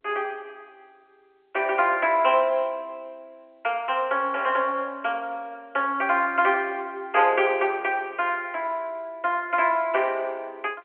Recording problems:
telephone audio; 300 Hz to 3.2 kHz, G.711

